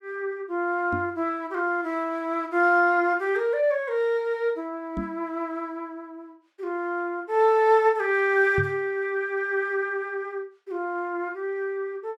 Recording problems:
microphone bump; at 1 s, at 5 s and at 8.5 s; peak -1 dB vs average level

